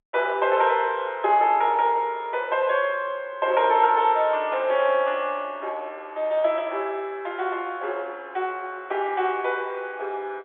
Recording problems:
telephone audio; 320 Hz to 3.6 kHz, G.711

